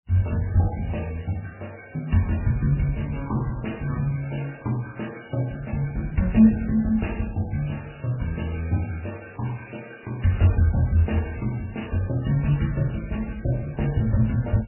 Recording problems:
lossy compression; MP3, then Vorbis, log-spectral distance 5 dB, nothing above 2.8 kHz

